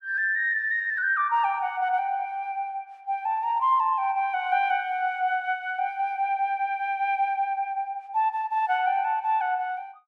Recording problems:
none

